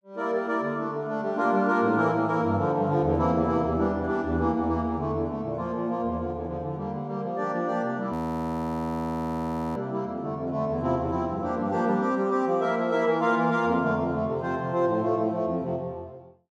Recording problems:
frozen audio; at 8 s for 1.5 s

